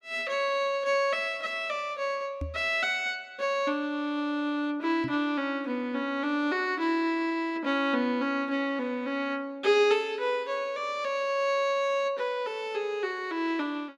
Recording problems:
microphone bump; at 2.5 s and at 5 s; peak -3 dB vs average level

